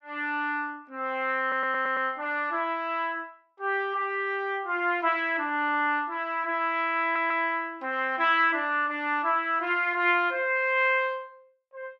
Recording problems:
stutter; at 1.5 s and at 7 s

